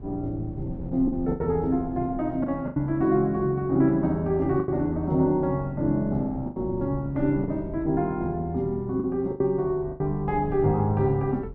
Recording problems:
wind on the microphone; below 170 Hz, SNR 16 dB
lost packets; 6% of the sound replaced, filled with the last packet

